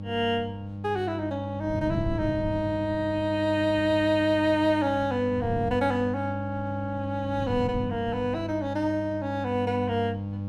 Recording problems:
hum; 50 Hz, harmonics up to 800 Hz, SNR 8 dB
wind on the microphone; below 180 Hz, SNR 13 dB

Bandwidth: 14.5 kHz